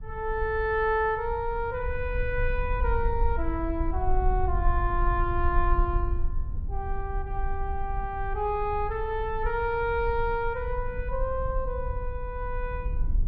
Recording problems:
treble cut off; nothing above 5.5 kHz
rumble; below 58 Hz, SNR 3 dB

